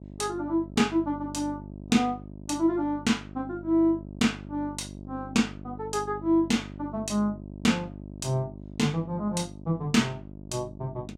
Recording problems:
mains hum; 50 Hz, harmonics up to 700 Hz, SNR 14 dB

